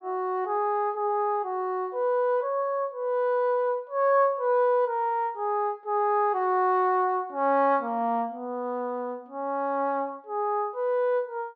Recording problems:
none

